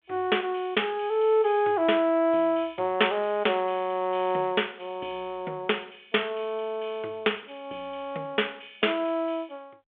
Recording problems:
telephone audio; 280 Hz to 3.5 kHz, G.726

